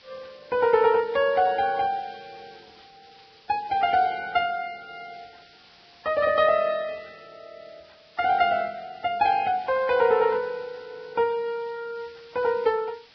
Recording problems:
lossy codec; Vorbis, log-spectral distance 9 dB
background hiss; SNR 29 dB

